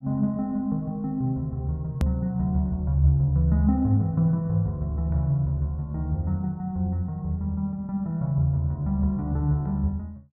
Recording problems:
edit click; at 2 s

